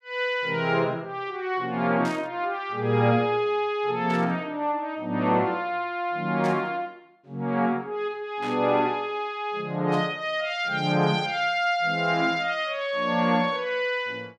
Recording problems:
static burst; 5 times, first at 2 s; peak -11 dB vs average level

